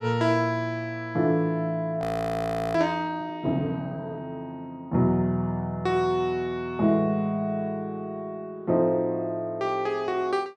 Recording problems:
frozen audio; at 2 s for 0.5 s

